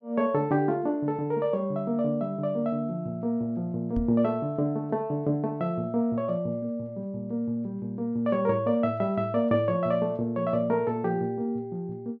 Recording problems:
microphone bump; at 4 s; peak -1 dB vs average level

